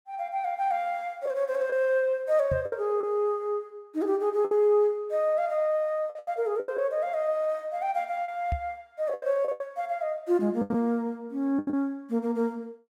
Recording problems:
packet loss; 7% of the sound replaced, filled with the last packet
knock on the microphone; at 2.5 s and at 8.5 s; peak 0 dB vs average level

